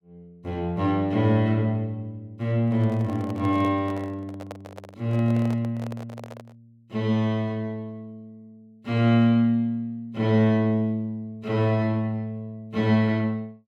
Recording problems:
microphone handling noise; from 2.5 to 6.5 s; peak -8 dB vs average level

